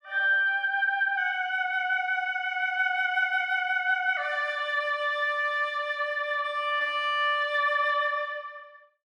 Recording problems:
none

